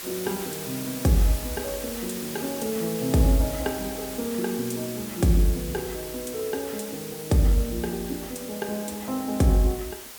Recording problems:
hiss; slope 0 dB per octave, SNR 9 dB

